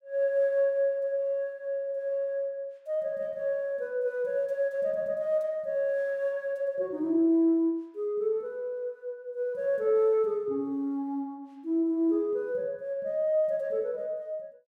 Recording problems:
none

